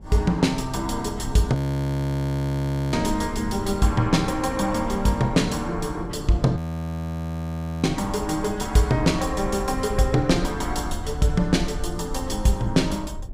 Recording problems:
rumble; below 80 Hz, SNR 13 dB
wind on the microphone; below 320 Hz, SNR 14 dB
frozen audio; at 1.5 s for 1.5 s and at 6.5 s for 1.5 s

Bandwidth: 15.5 kHz